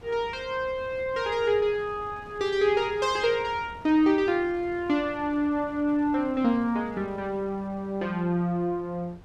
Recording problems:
wind on the microphone; below 560 Hz, SNR 22 dB

